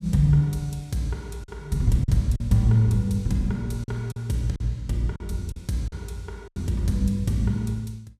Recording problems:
packet loss; 5% of the sound replaced, filled with silence

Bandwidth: 15 kHz